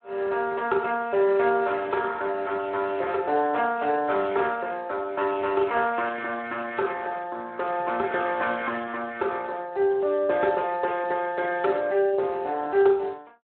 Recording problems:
telephone audio; 300 Hz to 2.6 kHz, Speex

